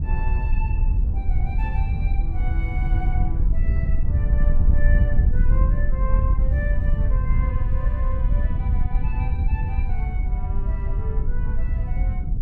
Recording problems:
wind on the microphone; below 70 Hz, SNR -14 dB

